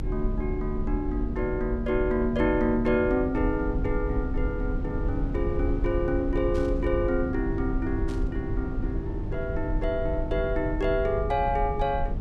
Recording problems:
mains hum; 50 Hz, harmonics up to 500 Hz, SNR 10 dB
low-frequency rumble; below 80 Hz, strongest tone 36 Hz, SNR 5 dB
burst of static; at 6.5 s and at 8 s; peak -15 dB vs average level

